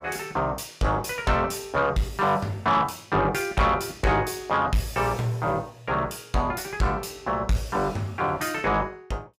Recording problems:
distorted audio; soft clipping, signal-to-distortion ratio 11 dB

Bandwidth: 15.5 kHz